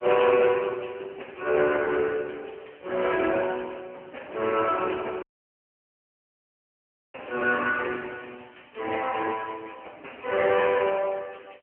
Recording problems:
telephone audio; 300 Hz to 2.9 kHz, AMR-NB
dropout; at 5 s for 2 s

